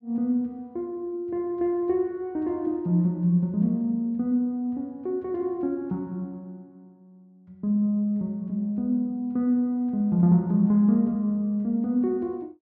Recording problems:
none

